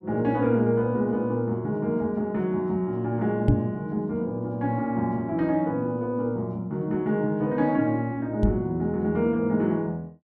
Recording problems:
microphone bump; at 3.5 s and at 8.5 s; peak +8 dB vs average level

